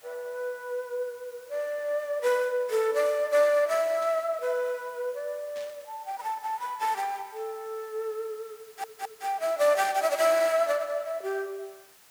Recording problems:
background hiss; slope 0 dB per octave, SNR 25 dB
static burst; at 4 s, at 5.5 s and at 10 s; peak -14 dB vs average level
stutter; at 8.5 s

